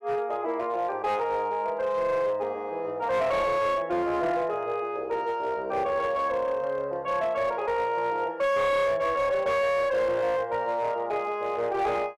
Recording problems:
distorted audio; hard clipping, signal-to-distortion ratio 11 dB

